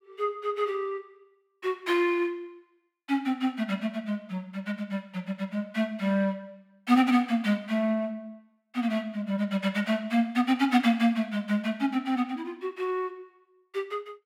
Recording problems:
none

